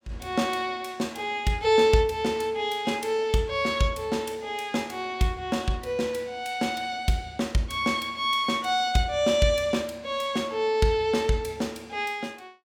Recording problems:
none

